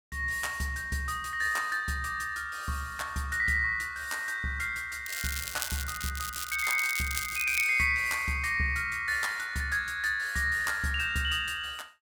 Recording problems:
crackle; from 5 to 7.5 s; loose cable, SNR 6 dB

